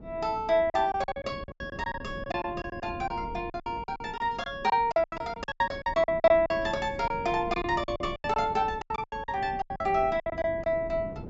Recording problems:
low-pass filter; nothing above 8 kHz
wind on the microphone; below 300 Hz, SNR 15 dB
packet loss; 17% of the sound replaced, filled with silence

